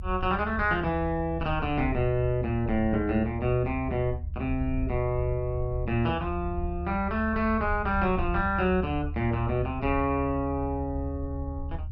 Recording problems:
rumble; below 76 Hz, strongest tone 74 Hz, SNR 7 dB

